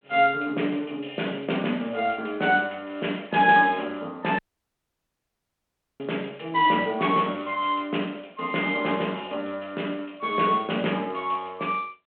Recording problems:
telephone audio; 190 Hz to 3.4 kHz, G.726
audio cutting out; at 4.5 s for 1.5 s

